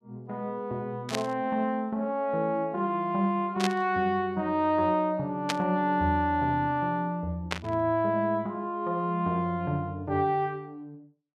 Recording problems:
static burst; 4 times, first at 1 s; peak +3 dB vs average level

